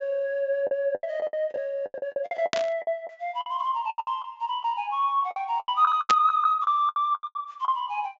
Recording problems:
treble cut off; nothing above 7.5 kHz
packet loss; 17% of the sound replaced, filled with the last packet
static burst; at 2.5 s and at 6 s; peak +4 dB vs average level

